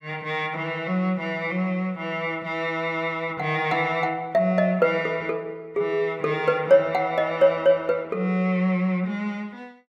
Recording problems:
none

